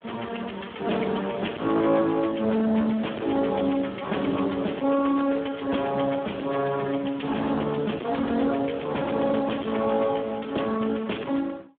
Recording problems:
telephone audio; 190 Hz to 3.4 kHz, Speex
distorted audio; soft clipping, signal-to-distortion ratio 11 dB

